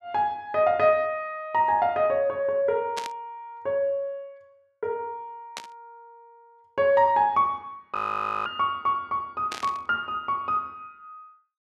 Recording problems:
burst of static; at 3 s, at 5.5 s and at 9.5 s; peak -4 dB vs average level
audio freezing; at 8 s for 0.5 s

